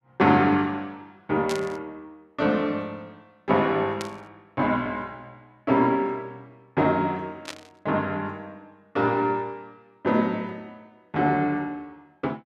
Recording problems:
burst of static; at 1.5 s, at 4 s and at 7.5 s; peak -4 dB vs average level

